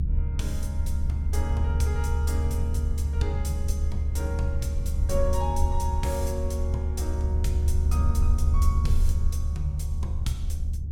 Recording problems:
rumble; below 74 Hz, strongest tone 74 Hz, SNR -7 dB

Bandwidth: 17 kHz